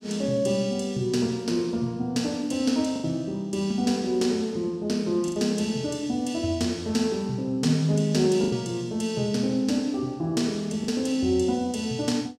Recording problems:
lost packets; 2% of the sound replaced, filled with the last packet

